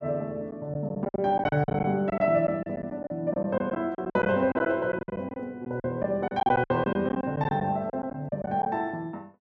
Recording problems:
packet loss; 14% of the sound replaced, filled with silence

